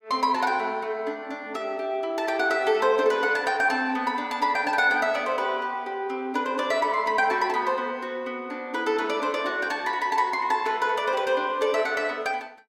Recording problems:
none

